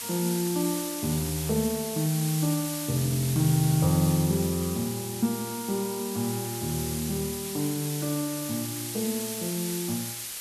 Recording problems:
background hiss; slope +2 dB per octave, SNR 5 dB

